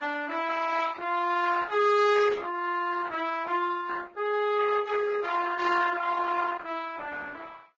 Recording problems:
lossy compression; Opus, then Vorbis, log-spectral distance 4 dB

